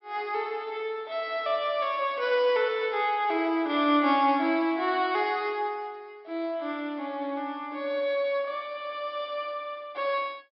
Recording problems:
low-pass filter; nothing above 5.4 kHz

